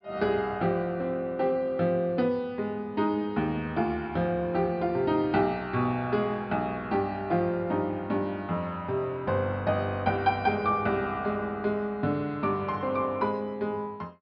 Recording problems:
low-pass filter; nothing above 5.5 kHz

